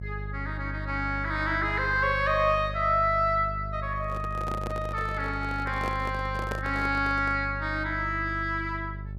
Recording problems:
hum; 50 Hz, harmonics up to 400 Hz, SNR 9 dB
handling noise; from 4 to 7.5 s; peak -3 dB vs average level

